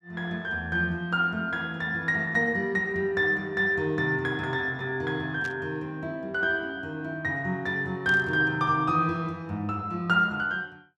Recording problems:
burst of static; at 5.5 s and at 8 s; peak -12 dB vs average level

